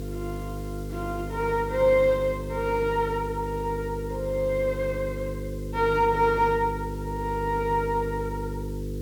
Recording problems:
electrical hum; 50 Hz, harmonics up to 500 Hz, SNR 8 dB
background hiss; SNR 25 dB

